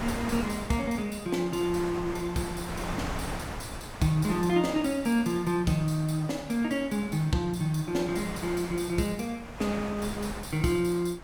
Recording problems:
wind noise; below 1.4 kHz, SNR 11 dB

